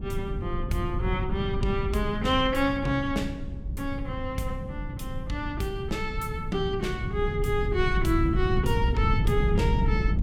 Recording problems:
wind noise; below 140 Hz, SNR 2 dB

